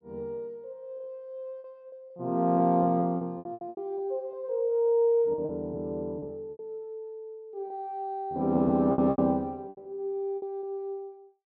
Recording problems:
packet loss; 10% of the sound replaced, filled with repeated pitch periods

